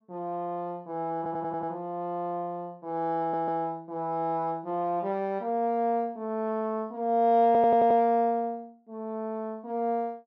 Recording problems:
audio stuttering; at 1 s, at 3 s and at 7.5 s

